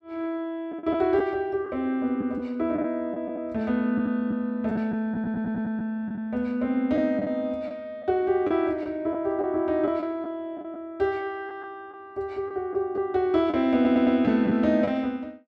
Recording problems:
lost packets; 5% of the sound replaced, filled with the last packet
stutter; at 5 s and at 14 s

